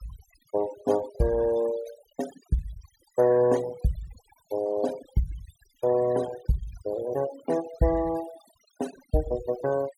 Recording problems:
denoising artefacts; signal-to-artefact ratio 15 dB

